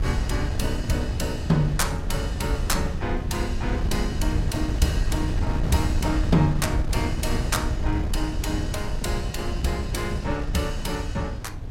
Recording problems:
wind on the microphone; below 120 Hz, SNR 0 dB

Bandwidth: 16 kHz